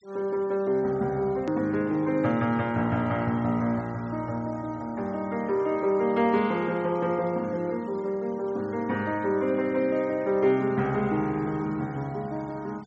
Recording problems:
low-pass filter; nothing above 8 kHz
noise reduction artefacts; signal-to-artefact ratio 26 dB
click at an edit; at 1.5 s

